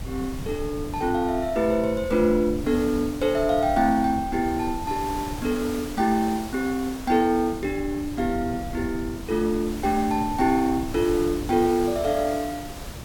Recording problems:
hiss; slope -4 dB per octave, SNR 15 dB
wind on the microphone; below 150 Hz, SNR 14 dB

